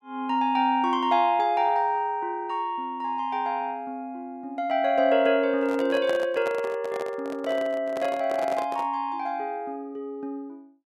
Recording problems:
microphone handling noise; from 5.5 to 9 s; peak -3 dB vs average level

